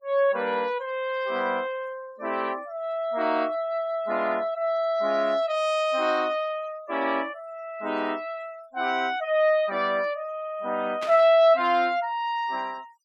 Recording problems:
denoising artefacts; signal-to-artefact ratio 25 dB
static burst; at 11 s; peak -7 dB vs average level

